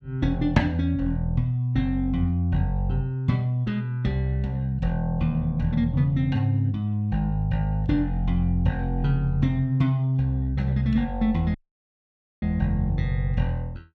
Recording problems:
dropout; at 12 s for 1 s

